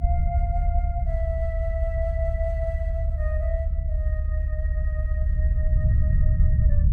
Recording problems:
rumble; below 72 Hz, SNR -10 dB

